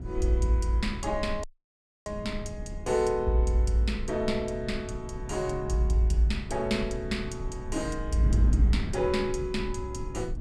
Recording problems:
rumble; below 60 Hz, SNR 11 dB
wind on the microphone; below 210 Hz, SNR 10 dB
audio cutting out; at 1.5 s for 0.5 s

